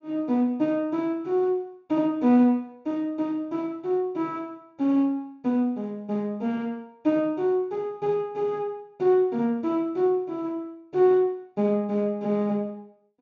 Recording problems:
treble missing; nothing above 7 kHz

